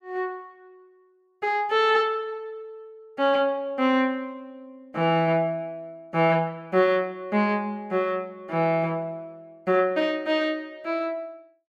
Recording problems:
none

